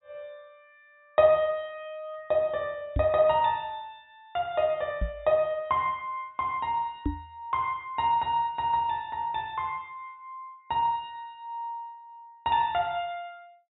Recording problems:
low-pass filter; nothing above 4 kHz
microphone thump; at 3 s, at 5 s and at 7 s; peak +3 dB vs average level

